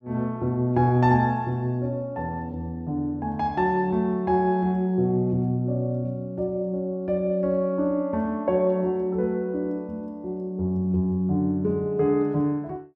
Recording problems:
none

